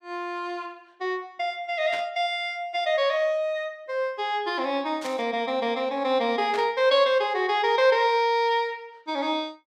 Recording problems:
static burst; at 2 s, at 5 s and at 6.5 s; peak -6 dB vs average level

